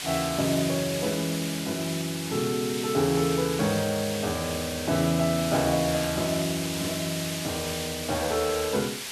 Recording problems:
background hiss; slope +1 dB per octave, SNR 5 dB

